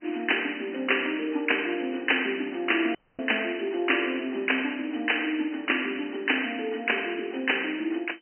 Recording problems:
telephone audio; 220 Hz to 3.1 kHz, G.711
dropout; at 3 s

